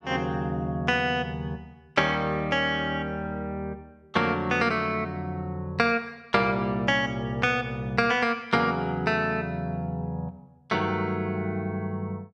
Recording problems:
none

